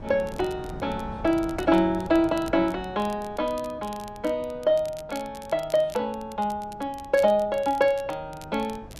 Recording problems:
wind on the microphone; below 360 Hz, SNR 18 dB
crackle; vinyl, SNR 23 dB

